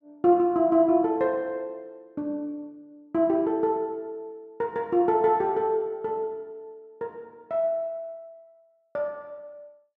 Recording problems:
none

